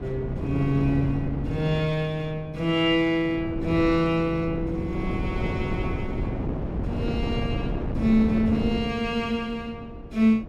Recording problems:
wind on the microphone; below 310 Hz, SNR 5 dB

